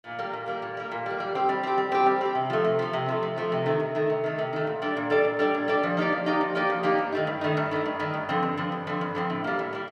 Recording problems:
none

